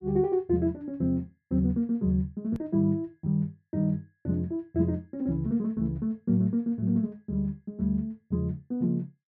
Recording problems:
hard cut with a click; at 2.5 s

